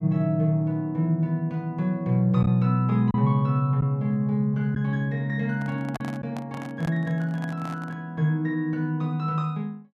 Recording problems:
lost packets; 1.2% of the sound replaced, filled with silence
handling noise; from 5.5 to 8 s; peak -5 dB vs average level

